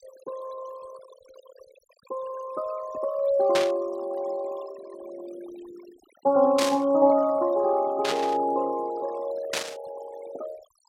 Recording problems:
denoising artefacts; signal-to-artefact ratio 19 dB
static burst; 4 times, first at 3.5 s; peak +1 dB vs average level

